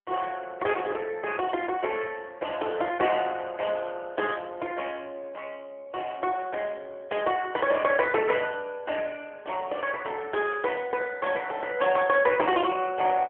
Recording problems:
telephone audio; 320 Hz to 3.3 kHz, AMR-NB

